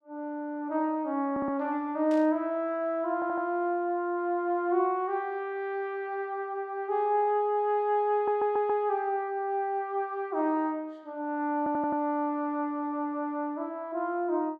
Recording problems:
audio stuttering; 4 times, first at 1.5 s
burst of static; at 2 s; peak -15 dB vs average level

